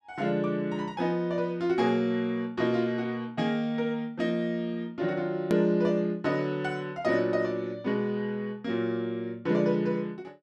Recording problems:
hard cut with a click; at 5.5 s

